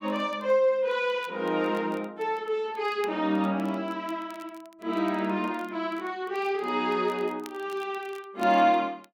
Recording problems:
crackling; vinyl, SNR 27 dB

